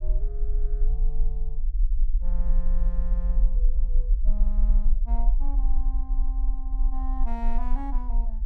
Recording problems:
rumble; below 40 Hz, strongest tone 20 Hz, SNR -14 dB

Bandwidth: 14.5 kHz